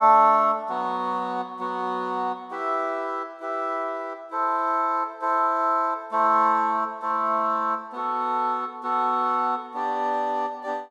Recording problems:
none

